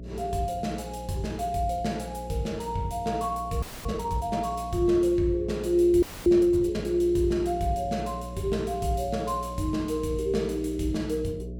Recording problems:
hum; 60 Hz, harmonics up to 660 Hz, SNR 13 dB
audio freezing; at 3.5 s and at 6 s

